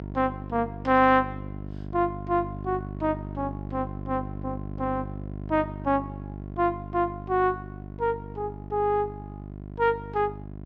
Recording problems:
hum; 50 Hz, harmonics up to 750 Hz, SNR 10 dB

